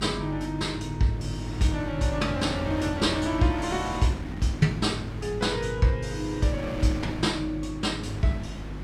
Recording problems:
mains hum; 50 Hz, harmonics up to 350 Hz, SNR 10 dB
wind on the microphone; below 1.2 kHz, SNR 12 dB

